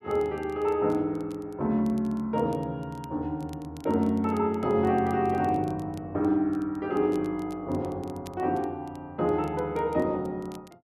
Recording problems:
crackle; vinyl, SNR 29 dB

